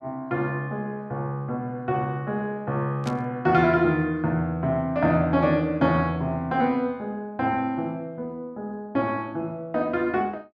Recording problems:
burst of static; at 3 s; peak -8 dB vs average level

